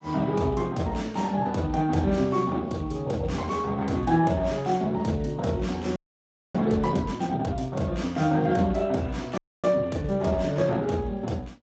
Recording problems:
codec artefacts; Speex, log-spectral distance 3 dB, nothing above 7.3 kHz
audio freezing; at 6 s for 0.5 s and at 9.5 s

